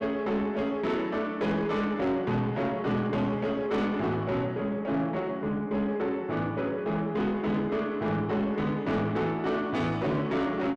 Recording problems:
distorted audio; soft clipping, signal-to-distortion ratio 10 dB

